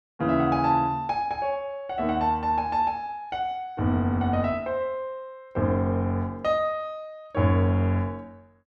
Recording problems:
none

